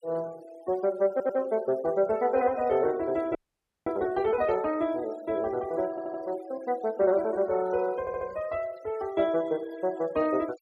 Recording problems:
denoising artefacts; signal-to-artefact ratio 22 dB
audio stuttering; at 1 s, at 6 s and at 8 s
frozen audio; at 3.5 s for 0.5 s

